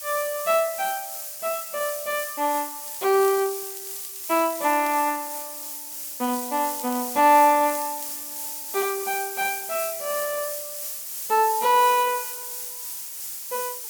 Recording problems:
hiss; SNR 7 dB
crackle; from 3 to 5 s and from 6 to 8 s; loose cable, SNR 19 dB

